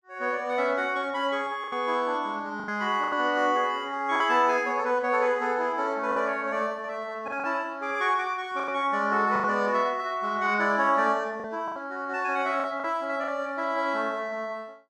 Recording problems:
lost packets; 5% of the sound replaced, filled with the last packet

